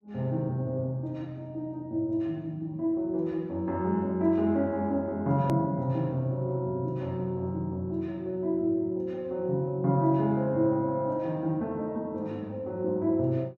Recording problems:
edit click; at 5.5 s

